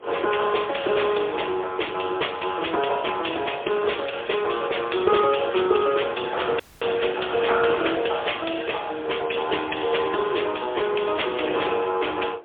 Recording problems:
phone line; 320 Hz to 3.5 kHz, AMR-NB, then MP3
wind on the microphone; below 760 Hz, SNR 16 dB
audio cutting out; at 6.5 s

